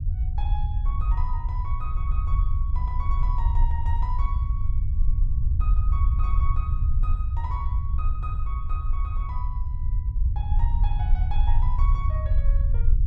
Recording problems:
low-frequency rumble; below 68 Hz, SNR -13 dB

